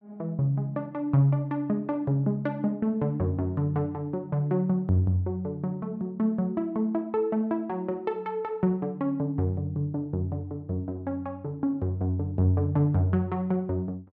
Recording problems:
none

